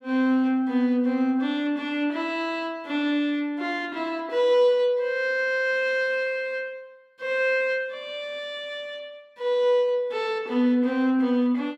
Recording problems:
none

